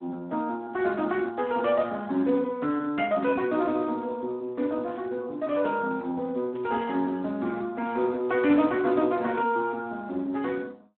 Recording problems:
phone line; 170 Hz to 3 kHz, Speex
static burst; 4 times, first at 1.5 s; peak -18 dB vs average level

